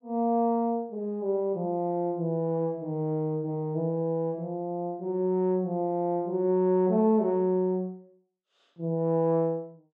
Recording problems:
none

